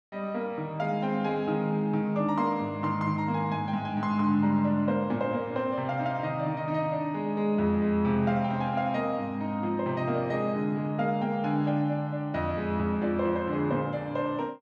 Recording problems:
none

